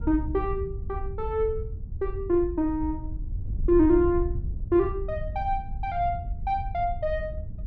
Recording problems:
wind on the microphone; below 80 Hz, SNR 8 dB

